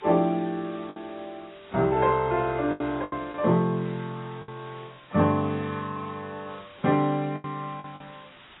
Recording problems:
lossy compression; AAC, log-spectral distance 5 dB, nothing above 3.2 kHz
hiss; SNR 24 dB
lost packets; 6% of the sound replaced, filled with the last packet

